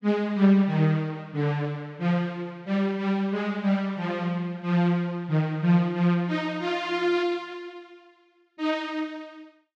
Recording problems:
none

